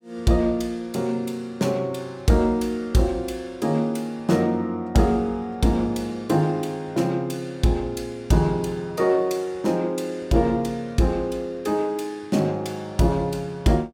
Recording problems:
none

